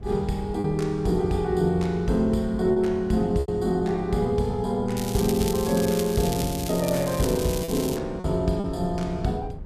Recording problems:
wind on the microphone; below 170 Hz, SNR 16 dB
lost packets; 3% of the sound replaced, filled with repeated pitch periods
crackle; from 5 to 8 s; loose cable, SNR 10 dB

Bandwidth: 14.5 kHz